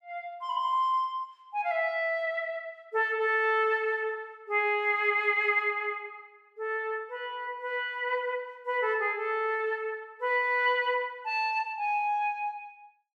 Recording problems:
none

